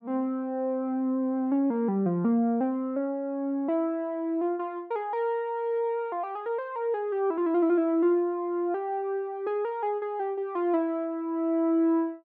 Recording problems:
none

